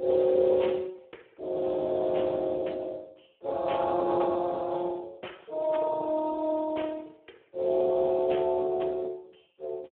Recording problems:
phone line; 320 Hz to 3.6 kHz, Speex

